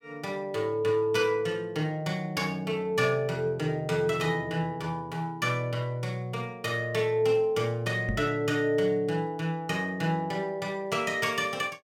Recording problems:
knock on the microphone; at 8 s; peak 0 dB vs average level

